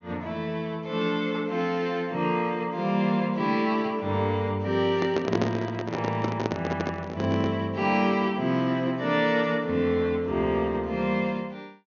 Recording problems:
treble missing; nothing above 6.7 kHz
microphone handling noise; from 5 to 7.5 s; peak +4 dB vs average level

